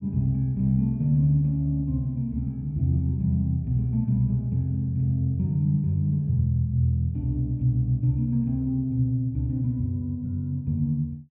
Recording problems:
none

